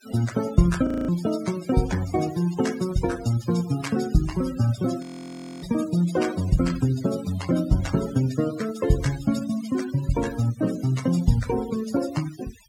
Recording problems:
noise reduction artefacts; signal-to-artefact ratio 15 dB
audio freezing; at 1 s and at 5 s for 0.5 s

